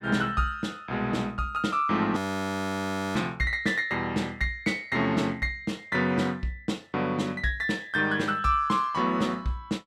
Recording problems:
audio freezing; at 2 s for 1 s

